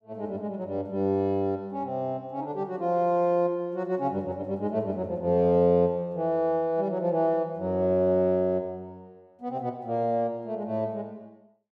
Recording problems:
none

